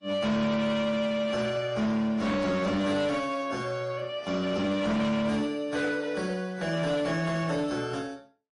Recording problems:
codec artefacts; MP3, then AAC, log-spectral distance 3 dB, nothing above 10.4 kHz
distortion; hard clipping, signal-to-distortion ratio 10 dB

